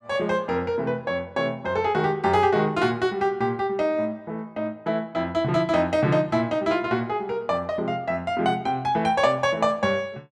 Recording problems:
none

